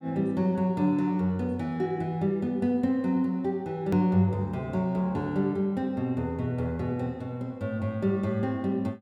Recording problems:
hard cut with a click; at 4 s

